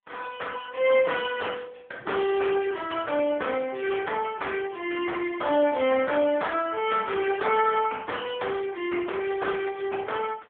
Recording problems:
phone line; 220 Hz to 3.4 kHz, AMR-NB

